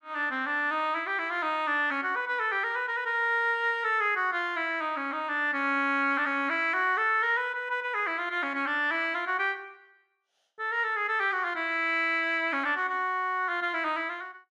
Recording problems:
none

